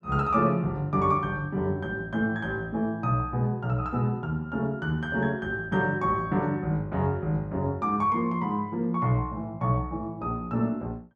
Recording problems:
none

